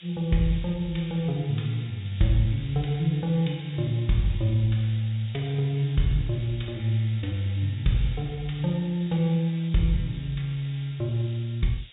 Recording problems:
treble cut off; nothing above 4 kHz
background hiss; SNR 21 dB

